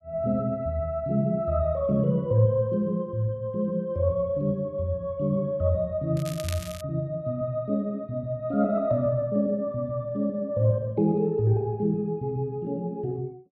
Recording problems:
crackle; at 6 s; loose cable, SNR 14 dB

